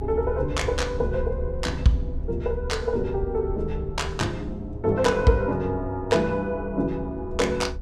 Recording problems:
low-frequency rumble; below 72 Hz, SNR 9 dB

